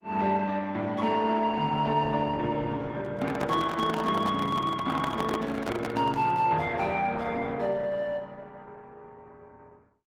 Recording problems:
codec artefacts; Opus, log-spectral distance 3 dB
microphone handling noise; from 3 to 6.5 s; peak +1 dB vs average level

